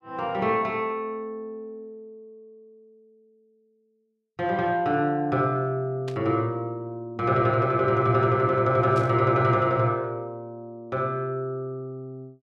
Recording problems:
static burst; at 6 s and at 9 s; peak -12 dB vs average level

